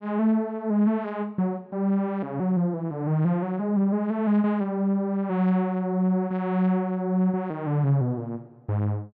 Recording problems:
treble missing; nothing above 8 kHz

